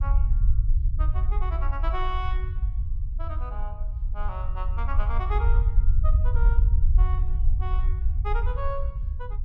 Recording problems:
rumble; below 60 Hz, SNR -10 dB

